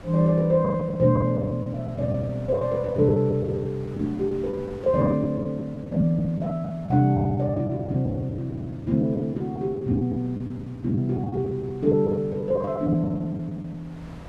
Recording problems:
wind on the microphone; below 660 Hz, SNR 22 dB
packet loss; 13% of the sound replaced, filled with the last packet

